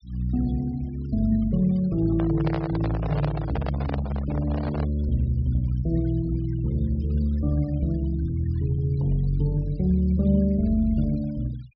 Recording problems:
treble cut off; nothing above 5.5 kHz
noise reduction artefacts; signal-to-artefact ratio 25 dB
microphone handling noise; from 2 to 5 s; peak -3 dB vs average level

